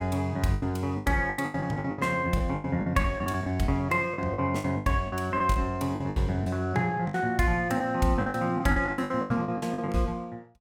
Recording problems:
lost packets; 17% of the sound replaced, filled with the last packet

